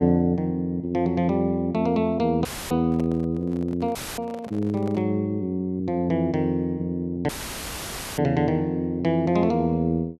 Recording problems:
audio cutting out; at 2.5 s, at 4 s and at 7.5 s for 1 s; filled with static
microphone handling noise; from 3 to 5 s; peak -10 dB vs average level

